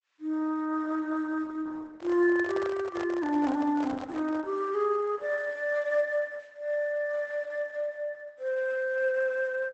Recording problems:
lossy codec; Opus, log-spectral distance 2 dB, nothing above 8 kHz
handling noise; from 2 to 4.5 s; peak -6 dB vs average level

